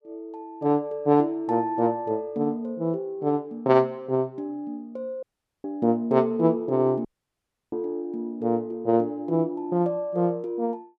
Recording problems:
dropout; at 5 s and at 7 s for 0.5 s

